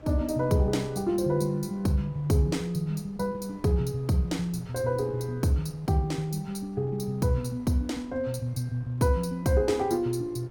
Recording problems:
wind on the microphone; below 470 Hz, SNR 24 dB

